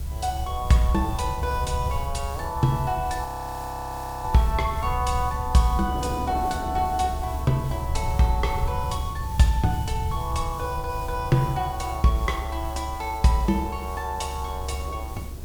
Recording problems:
background hiss; slope -2 dB per octave, SNR 18 dB
rumble; below 90 Hz, strongest tone 68 Hz, SNR 6 dB
wind on the microphone; below 470 Hz, SNR 17 dB
frozen audio; at 3.5 s for 1 s

